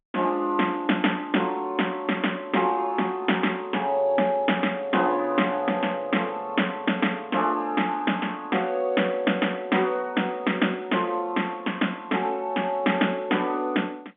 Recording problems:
phone line; 150 Hz to 3.5 kHz, G.711

